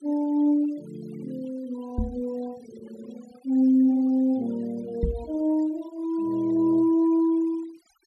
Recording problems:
denoising artefacts; signal-to-artefact ratio 26 dB
knock on the microphone; at 2 s and at 5 s; peak +2 dB vs average level

